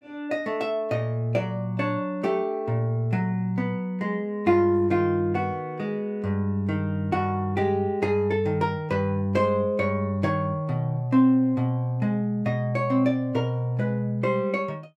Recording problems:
none

